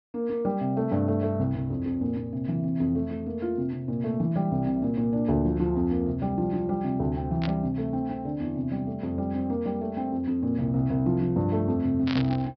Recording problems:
low-pass filter; nothing above 5.5 kHz
burst of static; at 7.5 s and at 12 s; peak -3 dB vs average level

